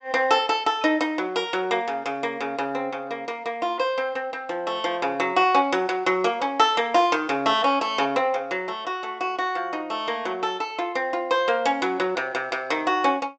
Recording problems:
treble cut off; nothing above 8 kHz

